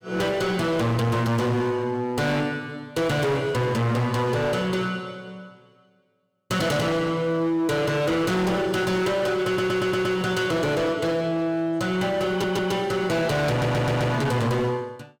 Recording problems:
distorted audio; hard clipping, signal-to-distortion ratio 7 dB
audio stuttering; at 9.5 s, at 12 s and at 13 s

